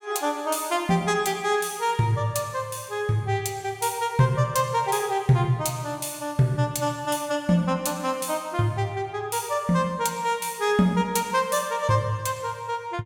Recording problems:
none

